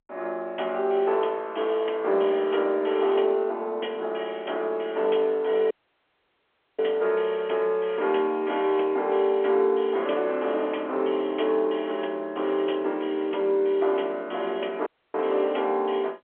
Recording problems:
telephone audio; 280 Hz to 3.5 kHz, G.711
dropout; at 5.5 s for 1 s and at 15 s

